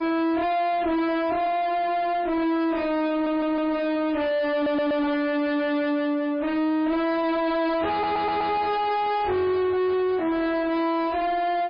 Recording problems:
codec artefacts; MP3, log-spectral distance 2 dB, nothing above 4.1 kHz
distortion; soft clipping, signal-to-distortion ratio 6 dB
audio stuttering; at 3 s, at 4.5 s and at 8 s

